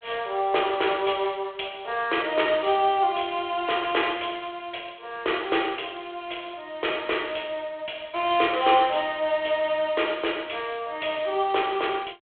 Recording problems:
phone line; 300 Hz to 3.4 kHz, G.726

